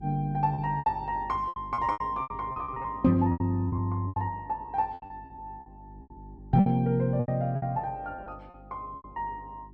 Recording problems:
hum; 50 Hz, harmonics up to 400 Hz, SNR 20 dB
packet loss; 16% of the sound replaced, filled with repeated pitch periods

